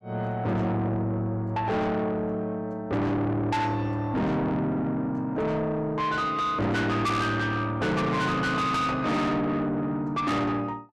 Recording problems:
distortion; soft clipping, signal-to-distortion ratio 6 dB

